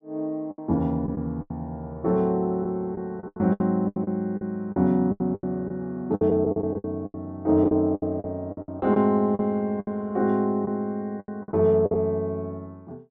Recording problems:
packet loss; 13% of the sound replaced, filled with the last packet

